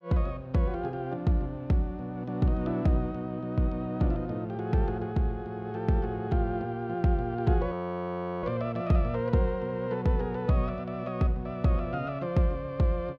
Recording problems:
audio freezing; at 7.5 s for 0.5 s

